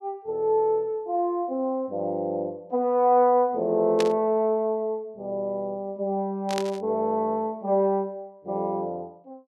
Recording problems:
burst of static; at 4 s and at 6.5 s; peak -1 dB vs average level

